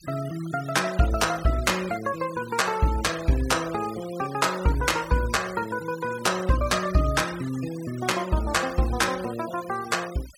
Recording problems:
noise reduction artefacts; signal-to-artefact ratio 15 dB

